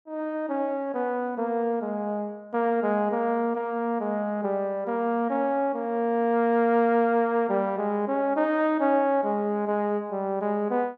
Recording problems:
none

